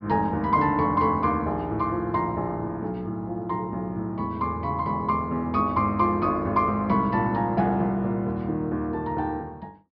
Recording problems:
low-pass filter; nothing above 5.5 kHz

